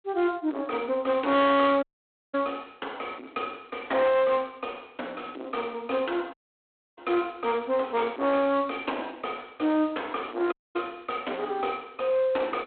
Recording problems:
phone line; 240 Hz to 3.7 kHz, G.726
distortion; soft clipping, signal-to-distortion ratio 10 dB
audio cutting out; at 2 s for 0.5 s, at 6.5 s for 0.5 s and at 11 s

